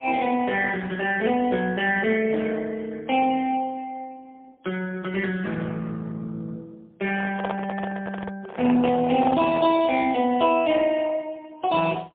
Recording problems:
telephone audio; 220 Hz to 3.4 kHz, AMR-NB, then MP3
microphone handling noise; from 7 to 10 s; peak -2 dB vs average level

